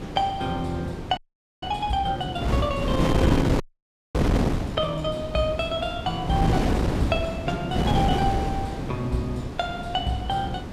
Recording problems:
wind on the microphone; below 410 Hz, SNR 0 dB
audio freezing; at 1 s and at 3.5 s for 0.5 s

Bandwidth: 14.5 kHz